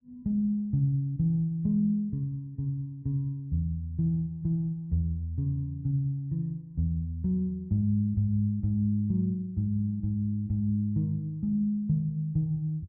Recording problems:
none

